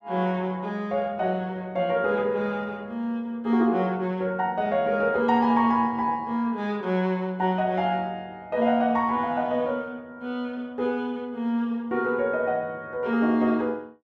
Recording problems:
none

